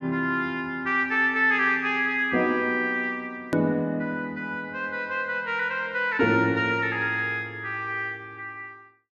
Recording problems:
low-pass filter; nothing above 8 kHz
hard cut with a click; at 3.5 s

